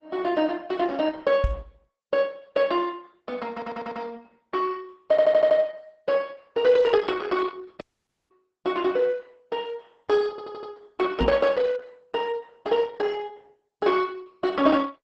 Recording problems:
lossy codec; Opus, log-spectral distance 3 dB
microphone bump; at 1.5 s and at 11 s; peak +3 dB vs average level
stutter; at 3.5 s, at 5 s and at 10 s
dropout; at 8 s for 0.5 s

